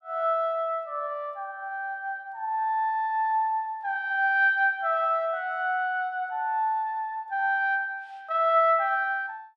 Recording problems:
none

